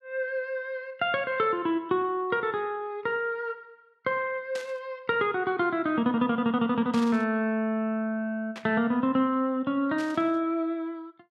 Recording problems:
static burst; 4 times, first at 4.5 s; peak -8 dB vs average level

